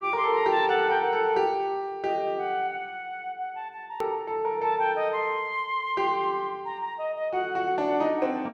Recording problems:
click at an edit; at 4 s

